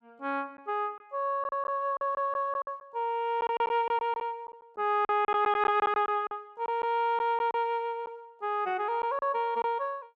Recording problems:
lost packets; 8% of the sound replaced, filled with silence

